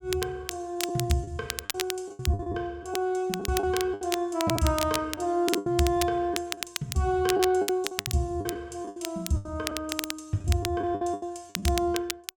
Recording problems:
crackling; vinyl, SNR 6 dB
lost packets; 12% of the sound replaced, filled with the last packet

